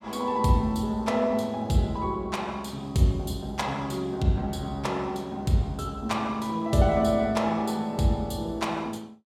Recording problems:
none

